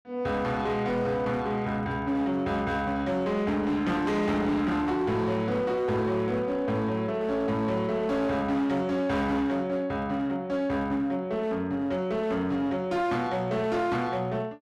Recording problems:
distorted audio; hard clipping, signal-to-distortion ratio 11 dB

